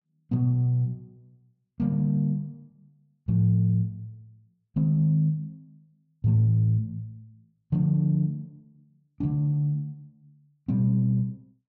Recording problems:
none

